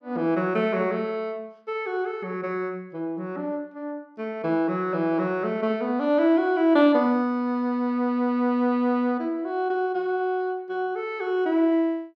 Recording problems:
none

